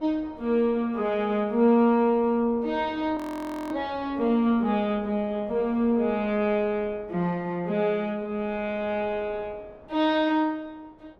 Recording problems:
wind noise; below 710 Hz, SNR 23 dB
frozen audio; at 3 s for 0.5 s

